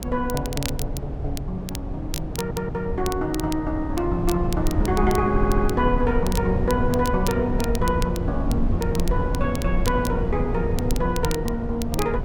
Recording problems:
low-frequency rumble; below 130 Hz, SNR 2 dB
crackle; vinyl, SNR 12 dB
audio stuttering; at 2.5 s and at 5.5 s

